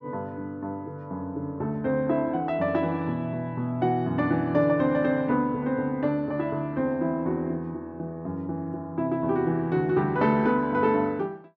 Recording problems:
none

